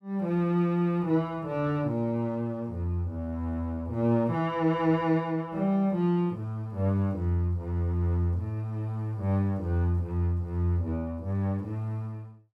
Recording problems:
none

